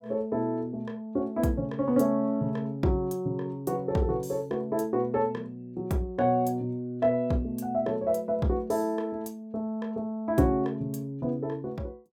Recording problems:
none

